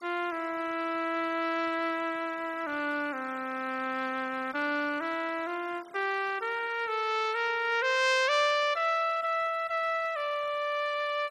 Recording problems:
noise reduction artefacts; signal-to-artefact ratio 21 dB

